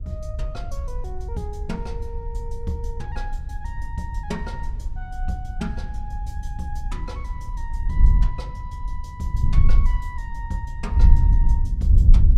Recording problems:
wind noise; below 64 Hz, SNR -10 dB

